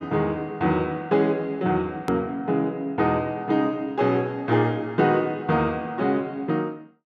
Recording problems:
edit click; at 2 s

